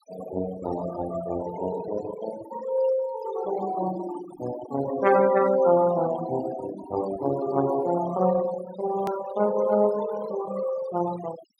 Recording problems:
noise reduction artefacts; signal-to-artefact ratio 13 dB
hard cut with a click; at 9 s

